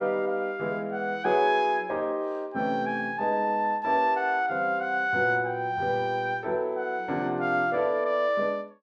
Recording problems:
none

